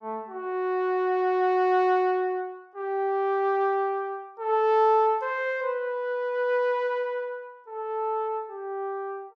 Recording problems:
none

